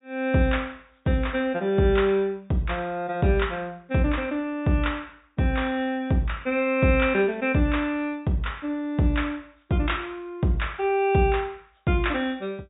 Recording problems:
low-pass filter; nothing above 4 kHz

